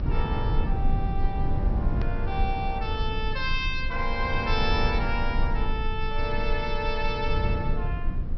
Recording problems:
low-pass filter; nothing above 5.7 kHz
rumble; below 80 Hz, strongest tone 20 Hz, SNR -1 dB
edit click; at 2 s

